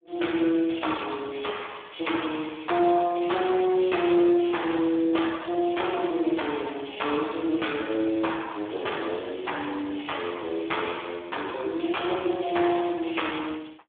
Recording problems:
phone line; 280 Hz to 3.6 kHz, Speex

